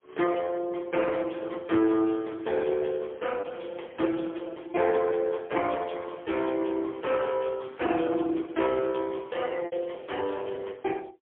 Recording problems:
telephone audio; 280 Hz to 3.3 kHz, AMR-NB, then MP3
lost packets; 1.3% of the sound replaced, filled with repeated pitch periods

